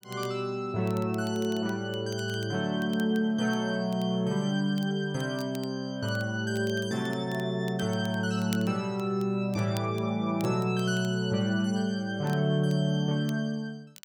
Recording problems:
crackling; vinyl, SNR 23 dB

